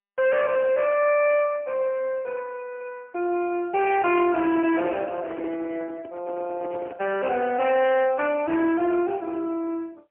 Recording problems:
telephone audio; 260 Hz to 3.6 kHz, AMR-NB, then MP3
distortion; hard clipping, signal-to-distortion ratio 12 dB
microphone handling noise; from 4 to 7 s; peak -5 dB vs average level

